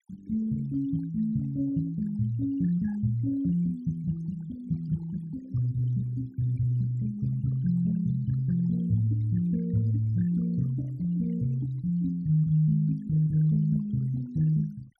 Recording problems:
denoising artefacts; signal-to-artefact ratio 25 dB

